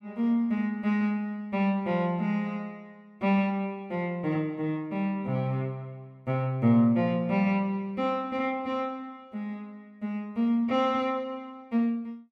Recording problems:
none

